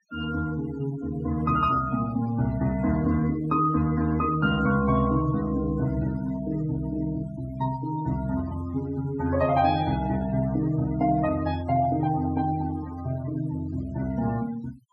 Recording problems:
noise reduction artefacts; signal-to-artefact ratio 17 dB

